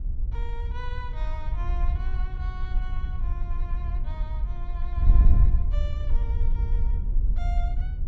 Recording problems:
wind on the microphone; below 60 Hz, SNR -16 dB

